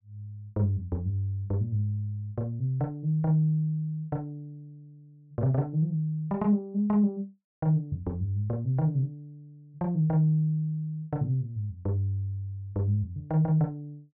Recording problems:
none

